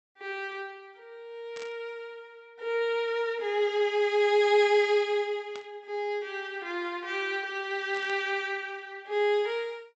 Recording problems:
treble missing; nothing above 8 kHz
burst of static; at 1.5 s, at 5.5 s and at 8 s; peak -12 dB vs average level

